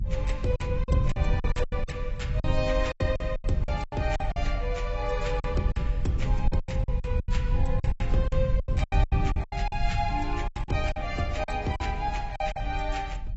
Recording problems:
codec artefacts; AAC, log-spectral distance 2 dB, nothing above 7.8 kHz
low-frequency rumble; below 88 Hz, SNR -1 dB
lost packets; 15% of the sound replaced, filled with silence

